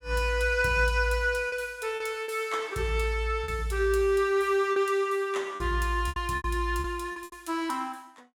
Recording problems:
lost packets; 7% of the sound replaced, filled with repeated pitch periods

